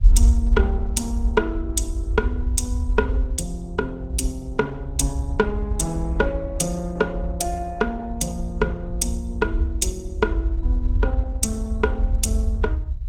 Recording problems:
lossy codec; Opus, log-spectral distance 2 dB, nothing above 19 kHz
rumble; below 66 Hz, SNR 0 dB

